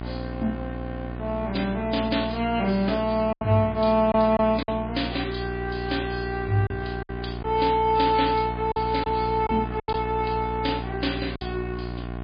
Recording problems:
lossy compression; MP3, log-spectral distance 4 dB
mains hum; 60 Hz, harmonics up to 1.8 kHz, SNR 8 dB
lost packets; 4% of the sound replaced, filled with silence

